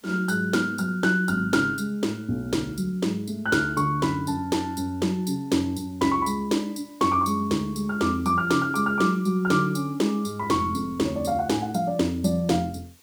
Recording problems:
background hiss; slope 0 dB per octave, SNR 30 dB

